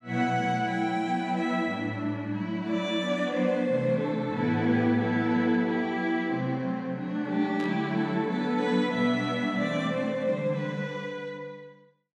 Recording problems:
burst of static; at 7.5 s; peak -12 dB vs average level

